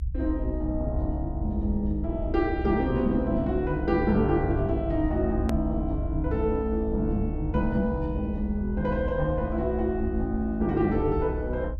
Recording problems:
low-frequency rumble; below 66 Hz, SNR 6 dB
hard cut with a click; at 5.5 s

